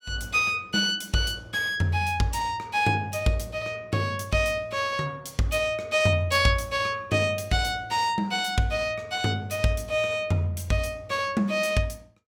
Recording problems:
none

